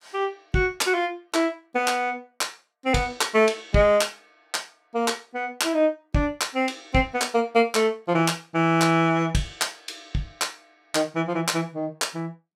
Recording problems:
none

